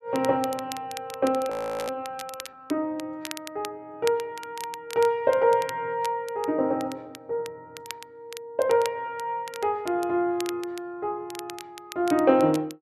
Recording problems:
crackling; vinyl, SNR 16 dB
audio freezing; at 1.5 s

